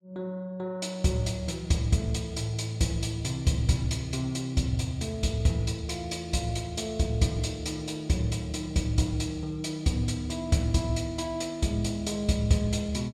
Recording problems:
none

